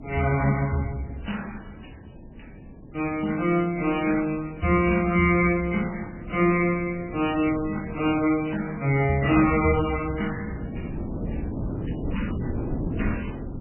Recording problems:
lossy compression; MP3, then MP3, log-spectral distance 5 dB
wind noise; below 310 Hz, SNR 12 dB

